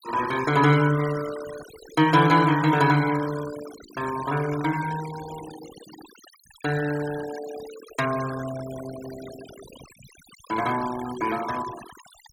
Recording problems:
denoising artefacts; signal-to-artefact ratio 15 dB

